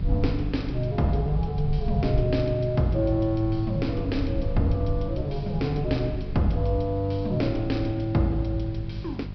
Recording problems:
low-pass filter; nothing above 5.5 kHz
hum; 50 Hz, harmonics up to 600 Hz, SNR 9 dB
hiss; SNR 27 dB
low-frequency rumble; below 88 Hz, SNR 8 dB

